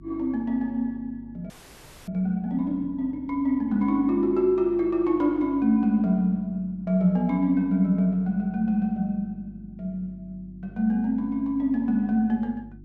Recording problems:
electrical hum; 50 Hz, harmonics up to 350 Hz, SNR 23 dB
audio freezing; at 1.5 s for 0.5 s

